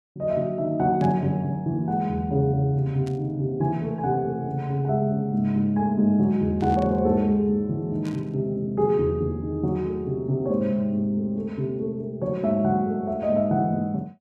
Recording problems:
burst of static; 4 times, first at 1 s; peak -16 dB vs average level

